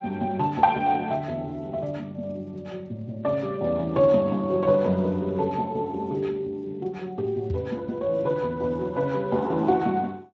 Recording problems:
codec artefacts; Speex, log-spectral distance 2 dB
knock on the microphone; at 7.5 s; peak -2 dB vs average level

